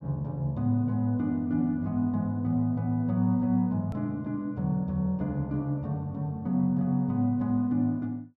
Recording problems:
click at an edit; at 4 s

